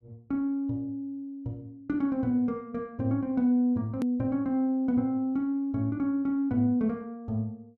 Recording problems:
edit click; at 4 s

